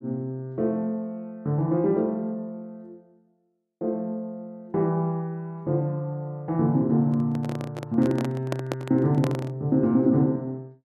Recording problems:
microphone handling noise; from 7 to 9.5 s; peak 0 dB vs average level

